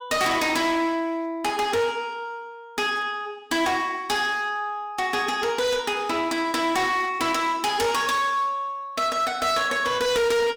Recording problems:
distortion; hard clipping, uneven, signal-to-distortion ratio 6 dB

